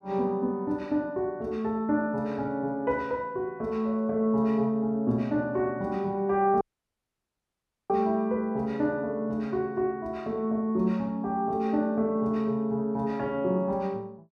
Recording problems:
audio cutting out; at 6.5 s for 1.5 s

